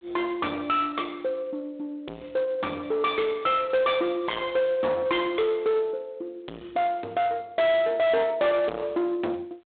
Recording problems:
phone line; 260 Hz to 4 kHz, G.726
distorted audio; soft clipping, signal-to-distortion ratio 6 dB

